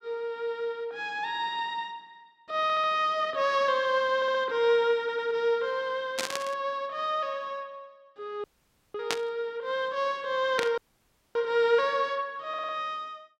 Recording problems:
audio stuttering; 4 times, first at 2.5 s
burst of static; at 6 s, at 9 s and at 11 s; peak +4 dB vs average level
audio cutting out; at 8.5 s for 0.5 s and at 11 s for 0.5 s

